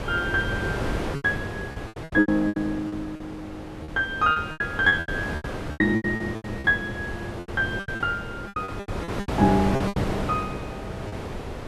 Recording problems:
wind noise; below 760 Hz, SNR 7 dB
packet loss; 15% of the sound replaced, filled with repeated pitch periods

